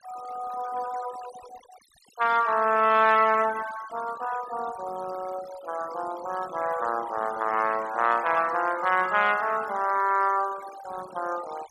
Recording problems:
noise reduction artefacts; signal-to-artefact ratio 18 dB

